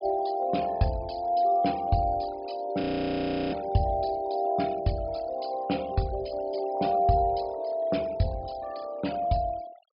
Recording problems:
low-pass filter; nothing above 5.5 kHz
denoising artefacts; signal-to-artefact ratio 20 dB
audio freezing; at 3 s for 0.5 s

